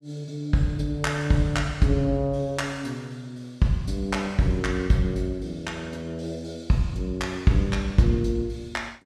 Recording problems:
none

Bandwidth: 13.5 kHz